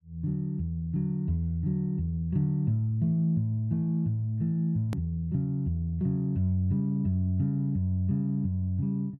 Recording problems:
hard cut with a click; at 5 s

